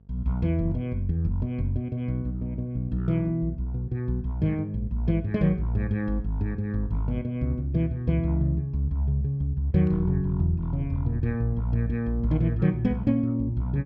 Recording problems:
hum; 50 Hz, harmonics up to 500 Hz, SNR 27 dB

